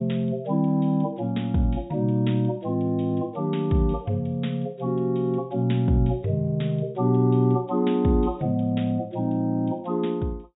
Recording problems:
low-pass filter; nothing above 4 kHz

